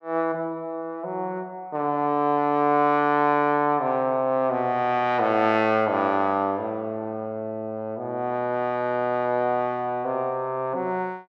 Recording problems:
none

